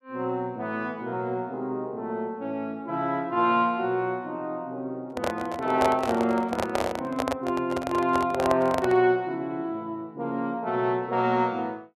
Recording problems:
microphone handling noise; from 5 to 9 s; peak +4 dB vs average level

